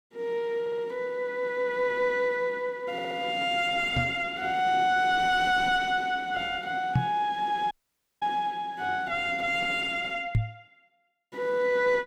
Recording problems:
distorted audio; soft clipping, signal-to-distortion ratio 10 dB
stutter; at 0.5 s and at 3 s
knock on the microphone; at 4 s, at 7 s and at 10 s; peak +6 dB vs average level
audio cutting out; at 7.5 s for 0.5 s

